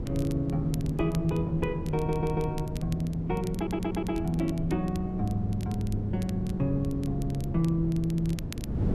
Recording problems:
wind noise; below 230 Hz, SNR 6 dB
crackle; vinyl, SNR 20 dB
audio stuttering; at 2 s and at 3.5 s

